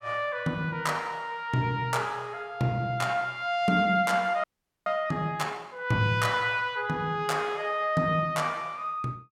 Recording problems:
frozen audio; at 4.5 s

